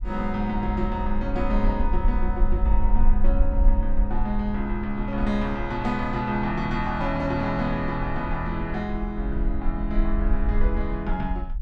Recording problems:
low-frequency rumble; below 44 Hz, strongest tone 20 Hz, SNR 2 dB

